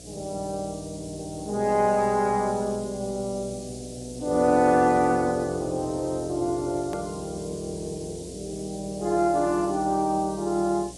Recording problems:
lossy codec; AAC, log-spectral distance 9 dB
electrical hum; 60 Hz, harmonics up to 720 Hz, SNR 22 dB
background hiss; SNR 18 dB
click at an edit; at 7 s

